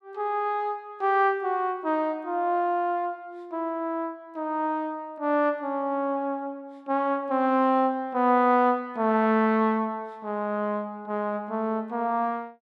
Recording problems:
none

